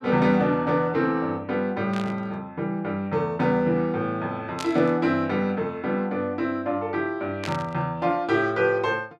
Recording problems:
static burst; at 2 s, at 4.5 s and at 7.5 s; peak -4 dB vs average level

